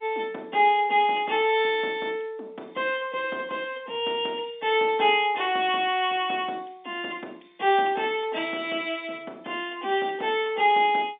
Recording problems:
phone line; 220 Hz to 3.7 kHz, G.711

